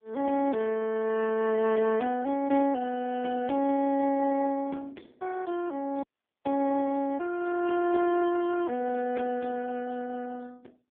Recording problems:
phone line; 170 Hz to 2.8 kHz, AMR-NB
dropout; at 6 s

